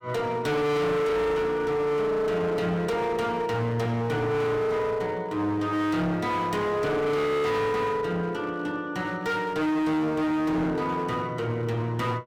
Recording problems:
distorted audio; hard clipping, uneven, signal-to-distortion ratio 6 dB

